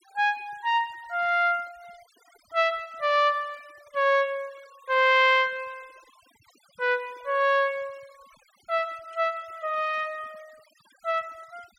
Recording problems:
noise reduction artefacts; signal-to-artefact ratio 28 dB

